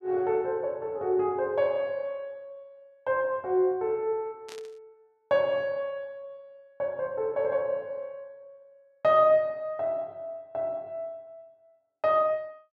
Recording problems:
static burst; at 4.5 s; peak -12 dB vs average level

